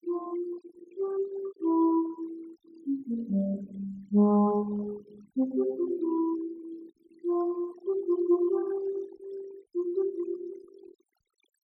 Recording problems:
noise reduction artefacts; signal-to-artefact ratio 21 dB

